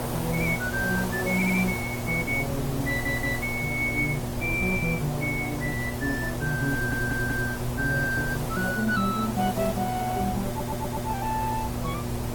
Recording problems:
codec artefacts; Opus, log-spectral distance 6 dB
hum; 60 Hz, harmonics up to 1.3 kHz, SNR 7 dB
hiss; SNR 8 dB
wind noise; below 130 Hz, SNR 12 dB
audio stuttering; 4 times, first at 1.5 s

